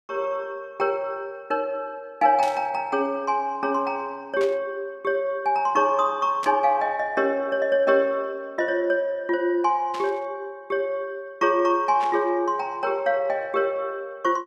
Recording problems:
burst of static; 5 times, first at 2.5 s; peak -8 dB vs average level

